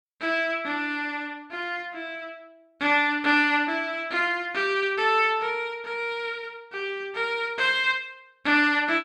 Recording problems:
none

